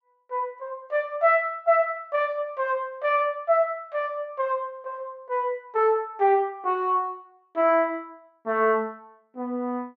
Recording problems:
none

